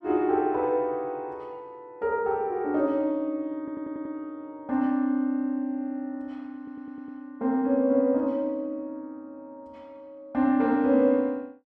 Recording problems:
stutter; at 3.5 s and at 6.5 s

